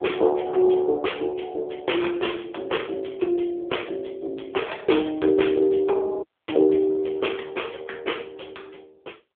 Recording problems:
phone line; 280 Hz to 3.6 kHz, AMR-NB
dropout; at 6 s

